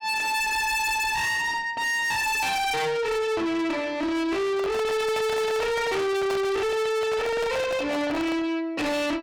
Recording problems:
distorted audio; soft clipping, signal-to-distortion ratio 6 dB
handling noise; from 4.5 to 8.5 s; peak -1 dB vs average level

